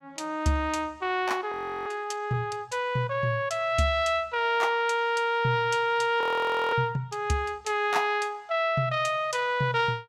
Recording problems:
audio freezing; at 1.5 s and at 6 s for 0.5 s

